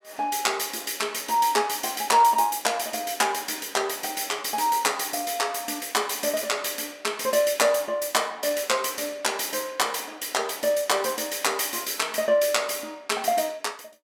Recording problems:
none

